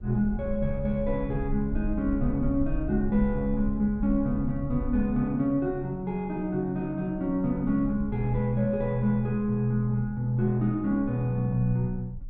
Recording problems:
low-frequency rumble; below 60 Hz, SNR 11 dB

